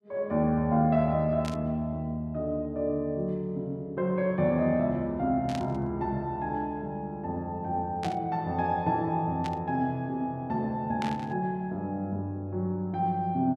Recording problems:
burst of static; 5 times, first at 1.5 s; peak -5 dB vs average level

